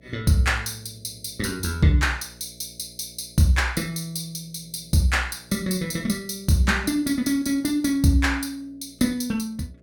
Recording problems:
hum; 60 Hz, harmonics up to 660 Hz, SNR 27 dB

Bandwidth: 17 kHz